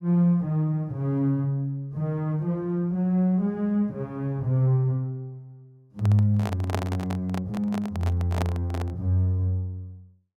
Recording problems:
handling noise; from 6 to 9 s; peak 0 dB vs average level

